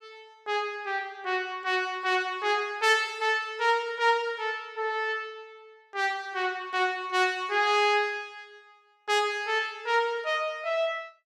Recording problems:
none

